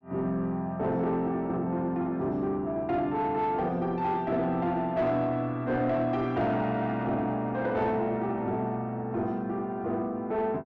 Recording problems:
distortion; soft clipping, signal-to-distortion ratio 12 dB

